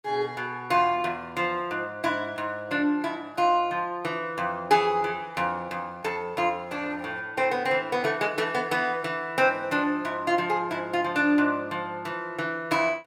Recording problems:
none

